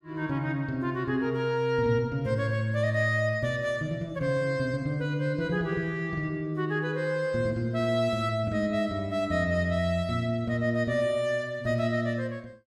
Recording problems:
none

